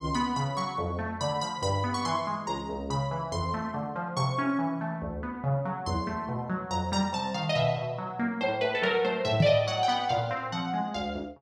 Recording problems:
microphone thump; at 9.5 s; peak +9 dB vs average level

